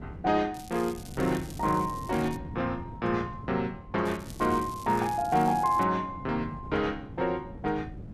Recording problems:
wind noise; below 230 Hz, SNR 14 dB
crackle; from 0.5 to 2.5 s and from 4 to 6 s; loose cable, SNR 19 dB

